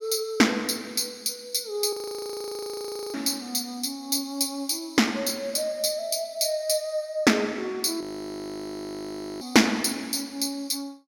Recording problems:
audio freezing; at 2 s for 1 s and at 8 s for 1.5 s

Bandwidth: 17 kHz